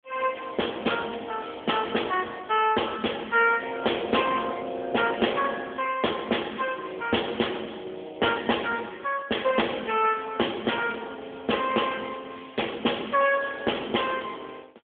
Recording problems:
phone line; 280 Hz to 3.4 kHz, AMR-NB

